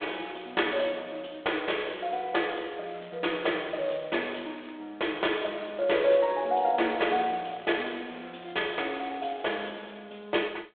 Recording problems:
telephone audio; 280 Hz to 3.5 kHz, G.726
crackling; from 2 to 5 s and from 7.5 to 10 s; loose cable, SNR 26 dB

